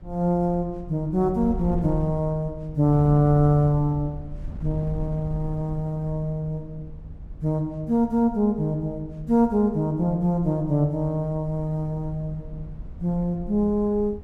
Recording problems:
wind on the microphone; below 88 Hz, SNR 14 dB

